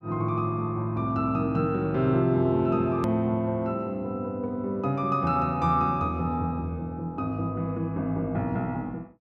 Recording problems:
click at an edit; at 3 s

